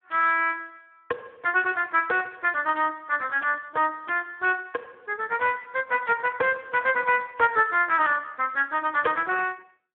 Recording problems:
telephone audio; 320 Hz to 3.4 kHz, Speex

